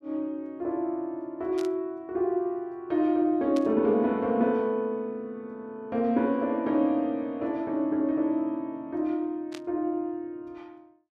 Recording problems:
burst of static; at 1.5 s, at 3.5 s and at 9.5 s; peak -10 dB vs average level

